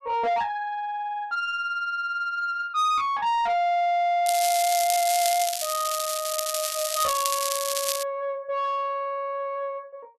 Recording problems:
distorted audio; soft clipping, signal-to-distortion ratio 11 dB
crackling; from 4.5 to 8 s; loose cable, SNR 2 dB

